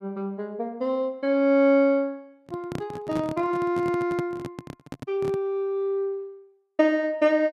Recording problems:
microphone handling noise; from 2.5 to 5.5 s; peak -3 dB vs average level

